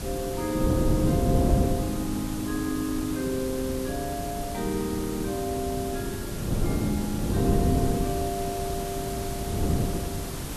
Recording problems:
hiss; slope -3 dB per octave, SNR 7 dB
wind noise; below 270 Hz, SNR -1 dB

